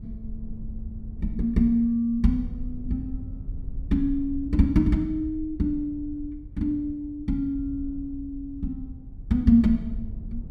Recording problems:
rumble; below 74 Hz, SNR 13 dB

